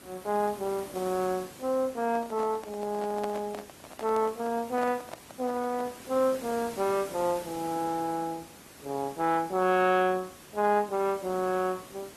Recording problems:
lossy compression; Opus, log-spectral distance 5 dB
background hiss; slope -4 dB per octave, SNR 18 dB
handling noise; from 2 to 6 s; peak -2 dB vs average level

